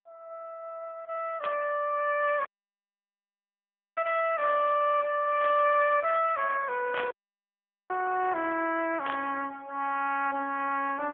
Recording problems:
phone line; 300 Hz to 3.3 kHz, AMR-NB
static burst; 4 times, first at 1.5 s; peak -2 dB vs average level
dropout; at 2.5 s for 1.5 s and at 7 s for 1 s

